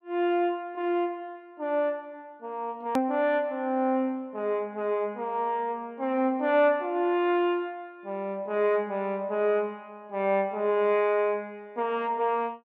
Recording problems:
hard cut with a click; at 3 s

